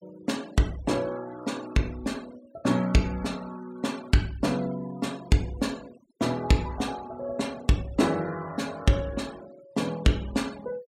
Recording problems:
noise reduction artefacts; signal-to-artefact ratio 21 dB

